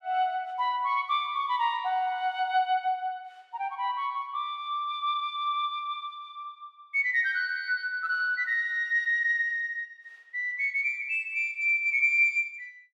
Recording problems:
none

